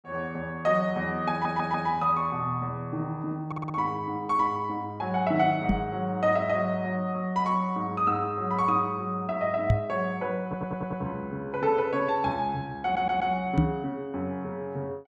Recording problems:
audio stuttering; 4 times, first at 1.5 s
knock on the microphone; at 5.5 s, at 9.5 s and at 14 s; peak +8 dB vs average level

